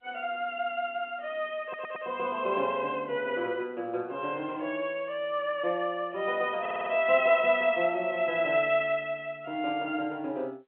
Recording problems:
telephone audio; 190 Hz to 3.5 kHz, G.711
audio stuttering; at 1.5 s and at 6.5 s

